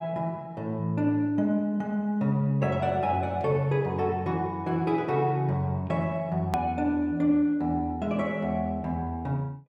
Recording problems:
edit click; at 6.5 s

